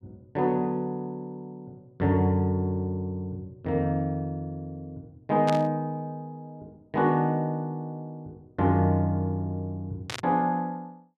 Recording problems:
static burst; at 5.5 s and at 10 s; peak -2 dB vs average level

